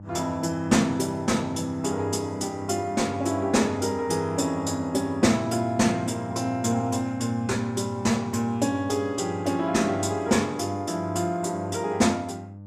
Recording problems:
hum; 50 Hz, harmonics up to 600 Hz, SNR 15 dB

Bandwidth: 14.5 kHz